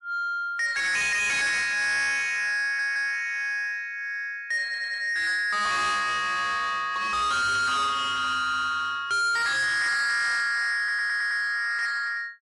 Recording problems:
codec artefacts; MP3, log-spectral distance 2 dB, nothing above 11 kHz
distortion; soft clipping, signal-to-distortion ratio 7 dB
stutter; at 2.5 s, at 4.5 s and at 11 s

